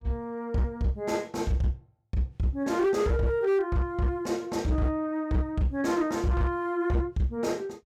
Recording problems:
distorted audio; hard clipping, signal-to-distortion ratio 12 dB

